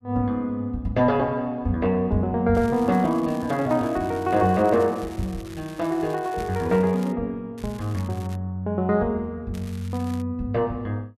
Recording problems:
crackling; from 2.5 to 7 s, at 7.5 s and at 9.5 s; loose cable, SNR 22 dB

